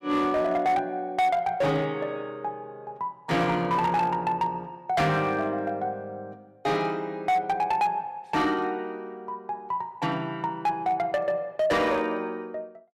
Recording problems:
distorted audio; hard clipping, signal-to-distortion ratio 12 dB

